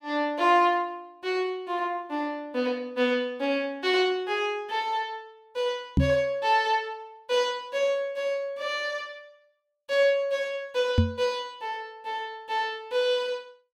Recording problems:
knock on the microphone; at 6 s and at 11 s; peak +9 dB vs average level

